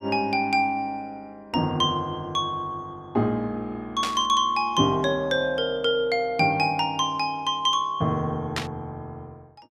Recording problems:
burst of static; at 4 s and at 8.5 s; peak +1 dB vs average level

